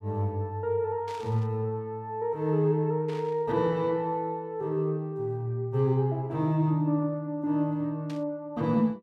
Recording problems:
burst of static; at 1 s, at 3 s and at 8 s; peak -14 dB vs average level

